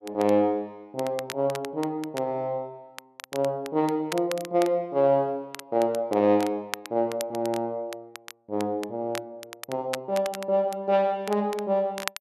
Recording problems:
crackling; vinyl, SNR 15 dB

